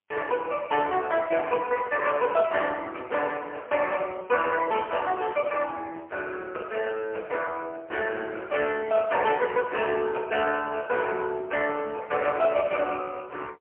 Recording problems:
telephone audio; 340 Hz to 3.1 kHz, AMR-NB, then MP3

